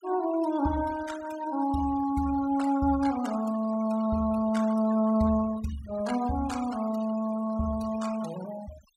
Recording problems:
denoising artefacts; signal-to-artefact ratio 17 dB

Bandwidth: 16.5 kHz